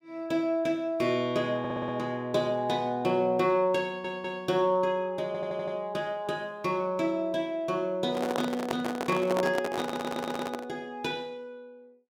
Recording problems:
stutter; 4 times, first at 1.5 s
microphone handling noise; from 8 to 11 s; peak +2 dB vs average level

